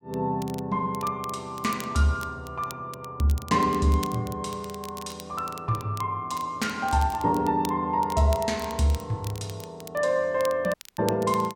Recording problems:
crackle; vinyl, SNR 17 dB
dropout; at 11 s

